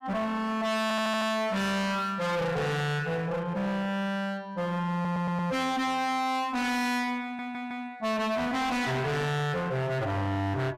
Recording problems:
distorted audio; hard clipping, uneven, signal-to-distortion ratio 5 dB
audio stuttering; at 1 s, at 5 s and at 7 s

